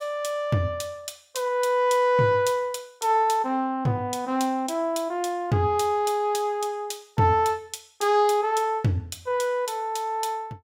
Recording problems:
none

